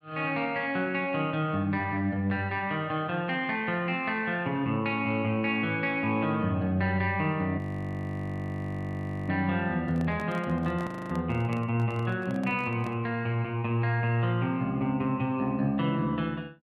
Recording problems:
frozen audio; at 7.5 s for 1.5 s and at 11 s
handling noise; from 10 to 13 s; peak -9 dB vs average level

